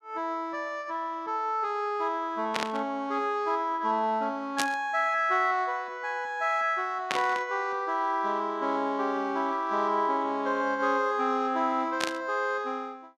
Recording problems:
burst of static; 4 times, first at 2.5 s; peak +3 dB vs average level

